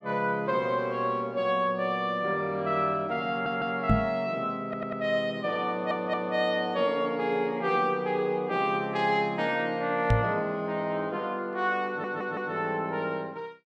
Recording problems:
stutter; 4 times, first at 3.5 s
microphone bump; at 4 s and at 10 s; peak +7 dB vs average level

